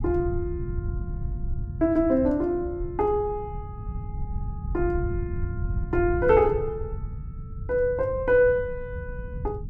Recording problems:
rumble; below 110 Hz, SNR 9 dB

